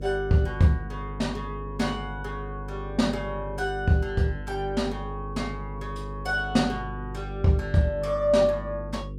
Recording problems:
electrical hum; 50 Hz, harmonics up to 500 Hz, SNR 10 dB

